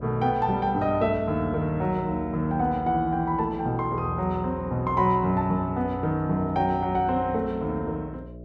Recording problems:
mains hum; 60 Hz, harmonics up to 660 Hz, SNR 16 dB

